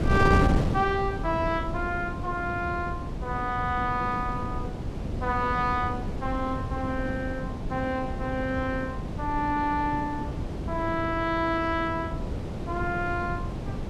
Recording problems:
wind noise; below 300 Hz, SNR 3 dB

